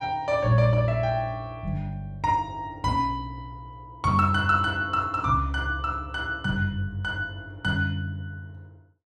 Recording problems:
none

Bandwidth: 13 kHz